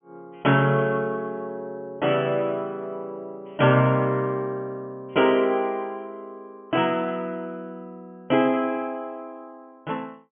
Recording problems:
treble cut off; nothing above 3.3 kHz

